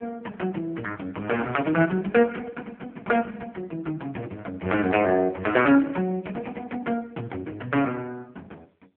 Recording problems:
telephone audio; 240 Hz to 3.2 kHz, AMR-NB

